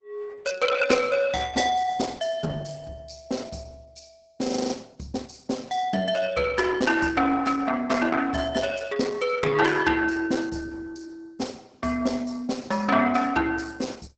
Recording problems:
codec artefacts; Opus, log-spectral distance 5 dB, nothing above 7.6 kHz
audio freezing; at 4.5 s

